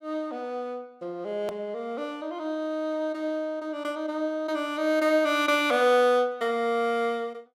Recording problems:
edit click; at 1.5 s

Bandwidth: 16.5 kHz